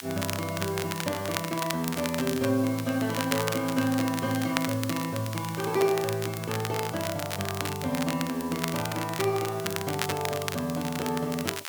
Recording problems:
hiss; slope +4 dB per octave, SNR 15 dB
crackling; vinyl, SNR 6 dB

